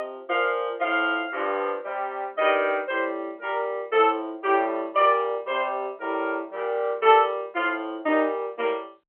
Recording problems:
telephone audio; 260 Hz to 3.3 kHz, G.711

